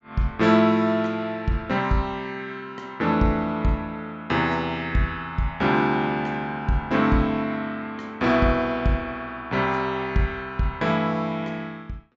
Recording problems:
low-pass filter; nothing above 8 kHz

